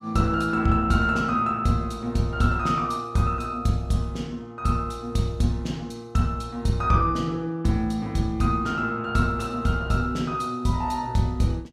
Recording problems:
none

